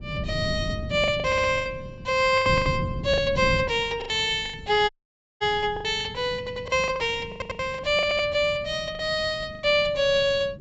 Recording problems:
treble cut off; nothing above 8 kHz
wind on the microphone; below 190 Hz, SNR 12 dB
lost packets; 11% of the sound replaced, filled with the last packet
audio stuttering; 4 times, first at 1.5 s
dropout; at 5 s for 0.5 s

